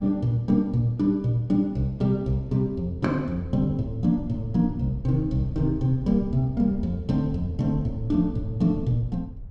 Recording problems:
wind on the microphone; below 94 Hz, SNR 14 dB

